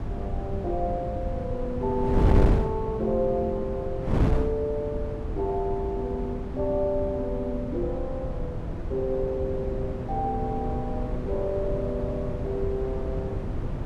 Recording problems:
wind noise; below 220 Hz, SNR 1 dB

